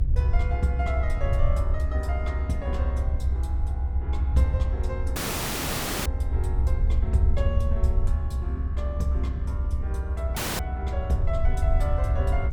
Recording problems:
low-frequency rumble; below 78 Hz, SNR -6 dB
wind on the microphone; below 200 Hz, SNR 12 dB
dropout; at 5 s for 1 s and at 10 s

